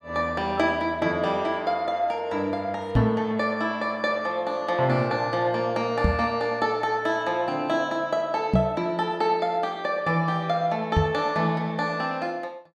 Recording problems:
microphone thump; 4 times, first at 3 s; peak +8 dB vs average level

